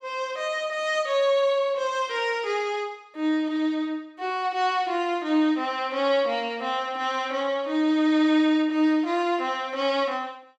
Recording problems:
none

